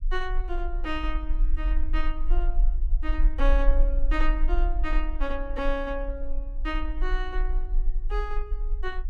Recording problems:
rumble; below 38 Hz, strongest tone 22 Hz, SNR -4 dB

